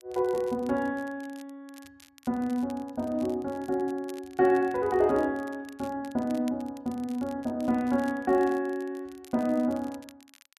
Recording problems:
crackle; vinyl, SNR 25 dB

